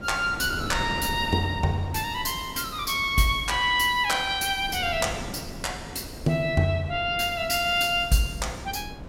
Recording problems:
wind on the microphone; below 380 Hz, SNR 13 dB

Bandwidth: 16.5 kHz